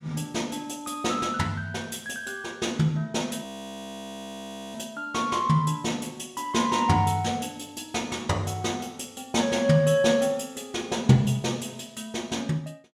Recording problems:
audio freezing; at 3.5 s for 1.5 s

